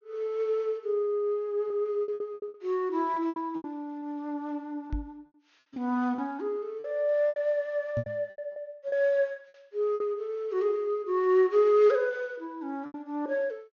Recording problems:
treble missing; nothing above 6.7 kHz
packet loss; 9% of the sound replaced, filled with repeated pitch periods
knock on the microphone; at 5 s and at 8 s; peak -1 dB vs average level

